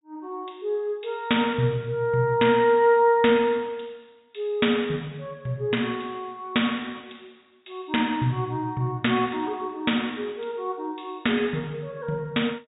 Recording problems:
treble cut off; nothing above 4 kHz

